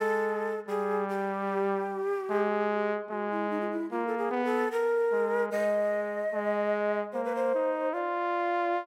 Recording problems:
none

